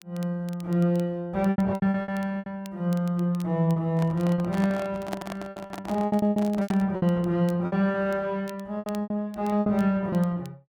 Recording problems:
crackling; vinyl, SNR 27 dB
packet loss; 12% of the sound replaced, filled with repeated pitch periods
handling noise; from 4 to 7 s; peak -3 dB vs average level

